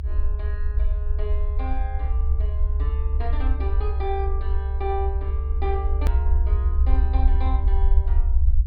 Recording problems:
treble cut off; nothing above 4.9 kHz
low-frequency rumble; below 68 Hz, SNR -10 dB
edit click; at 6 s

